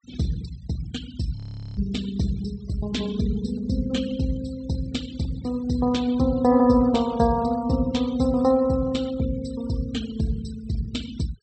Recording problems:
treble missing; nothing above 8 kHz
noise reduction artefacts; signal-to-artefact ratio 18 dB
frozen audio; at 1.5 s

